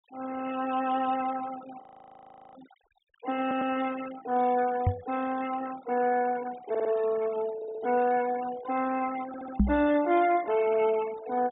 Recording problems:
treble cut off; nothing above 4 kHz
noise reduction artefacts; signal-to-artefact ratio 17 dB
frozen audio; at 2 s for 0.5 s
stutter; 4 times, first at 3.5 s
microphone bump; at 5 s and at 9.5 s; peak +8 dB vs average level

